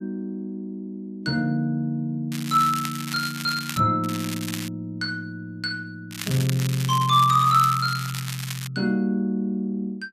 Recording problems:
crackling; from 2.5 to 4 s, at 4 s and from 6 to 8.5 s; loose cable, SNR 10 dB

